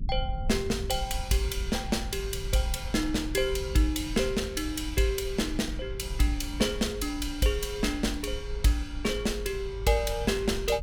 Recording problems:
rumble; below 70 Hz, SNR 8 dB

